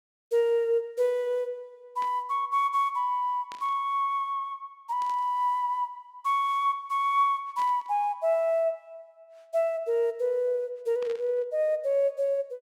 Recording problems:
static burst; 5 times, first at 2 s; peak -14 dB vs average level

